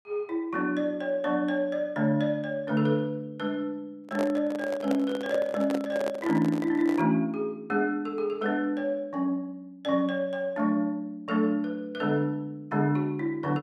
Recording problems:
handling noise; from 4 to 7 s; peak 0 dB vs average level

